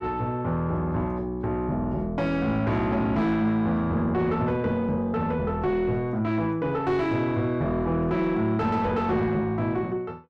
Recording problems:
distorted audio; soft clipping, signal-to-distortion ratio 9 dB

